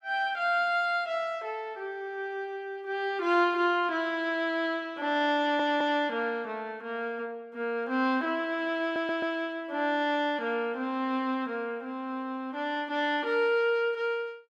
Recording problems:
stutter; at 5.5 s and at 9 s

